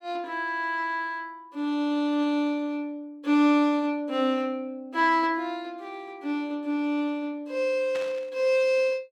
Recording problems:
burst of static; at 8 s; peak -9 dB vs average level

